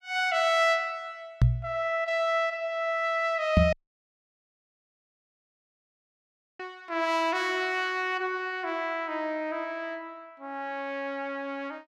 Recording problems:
knock on the microphone; at 1.5 s and at 3.5 s; peak +10 dB vs average level
dropout; at 3.5 s for 3 s

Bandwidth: 15.5 kHz